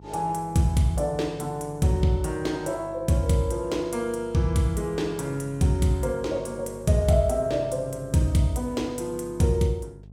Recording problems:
hum; 50 Hz, harmonics up to 450 Hz, SNR 20 dB

